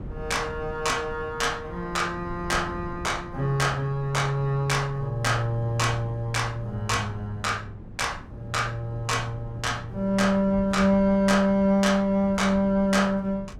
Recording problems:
wind on the microphone; below 190 Hz, SNR 16 dB

